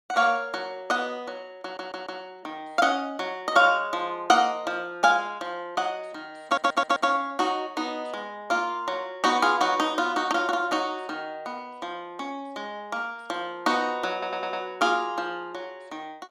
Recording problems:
audio stuttering; at 1.5 s, at 6.5 s and at 14 s

